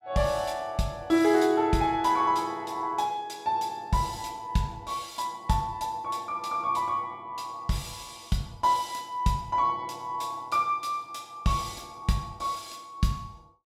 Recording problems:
none

